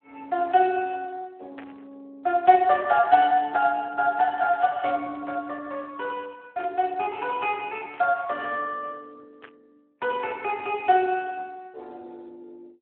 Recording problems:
telephone audio; 320 Hz to 3.3 kHz, Speex
static burst; 5 times, first at 1.5 s; peak -13 dB vs average level

